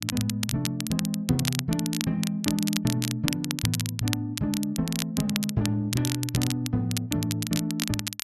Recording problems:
crackle; vinyl, SNR 5 dB

